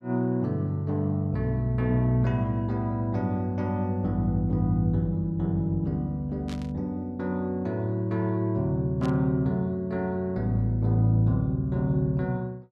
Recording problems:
static burst; at 6.5 s and at 9 s; peak -12 dB vs average level

